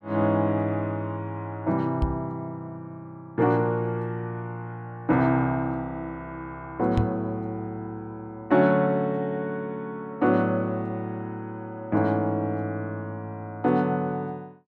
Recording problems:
microphone bump; at 2 s and at 7 s; peak +5 dB vs average level

